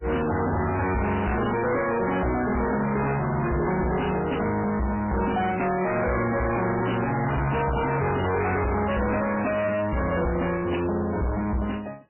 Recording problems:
lossy codec; MP3, log-spectral distance 8 dB, nothing above 2.9 kHz
distortion; soft clipping, signal-to-distortion ratio 6 dB

